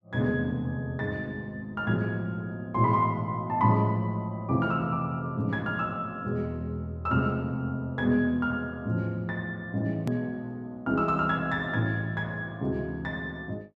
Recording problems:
hard cut with a click; at 10 s

